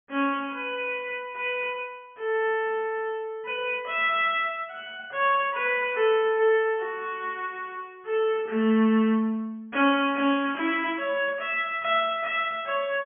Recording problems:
low-pass filter; nothing above 3.3 kHz

